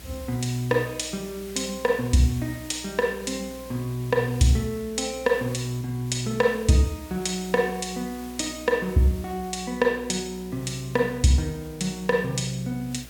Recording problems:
hum; 60 Hz, harmonics up to 660 Hz, SNR 22 dB
background hiss; slope 0 dB per octave, SNR 20 dB

